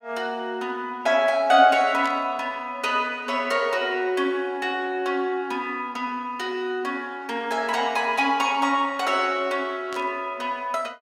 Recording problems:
static burst; at 2 s and at 10 s; peak -8 dB vs average level

